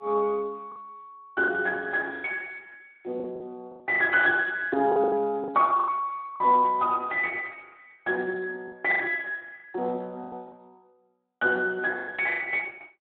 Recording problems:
phone line; 260 Hz to 3 kHz, Speex
packet loss; 10% of the sound replaced, filled with the last packet

